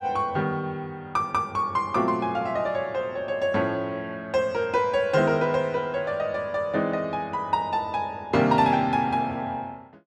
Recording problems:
none

